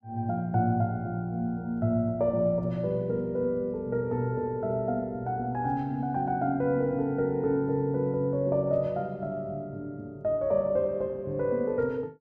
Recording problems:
none

